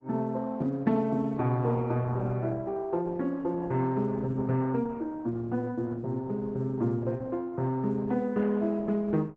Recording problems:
codec artefacts; Opus, log-spectral distance 2 dB

